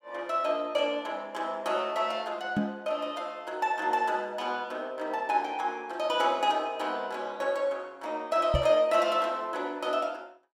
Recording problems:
microphone thump; at 2.5 s and at 8.5 s; peak +4 dB vs average level

